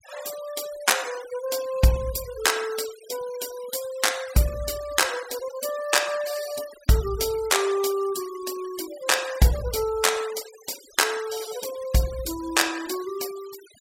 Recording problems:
denoising artefacts; signal-to-artefact ratio 14 dB

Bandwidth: 16 kHz